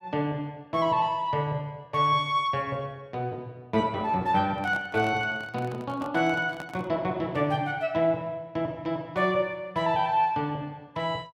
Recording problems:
handling noise; from 4.5 to 7 s; peak -8 dB vs average level

